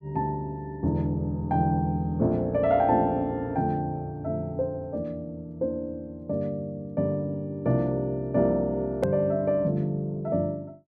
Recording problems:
hard cut with a click; at 9 s

